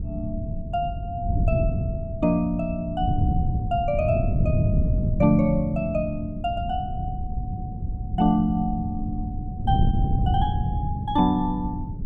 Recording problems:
wind noise; below 150 Hz, SNR 1 dB

